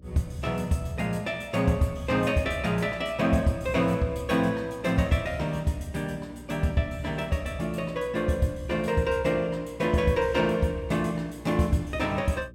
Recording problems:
electrical hum; 60 Hz, harmonics up to 600 Hz, SNR 21 dB

